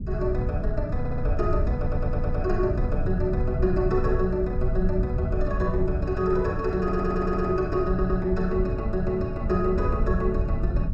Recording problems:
low-frequency rumble; below 100 Hz, SNR 2 dB
audio stuttering; 4 times, first at 1 s

